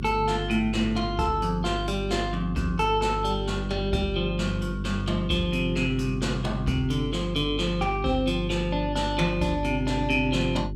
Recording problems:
electrical hum; 50 Hz, harmonics up to 400 Hz, SNR 7 dB

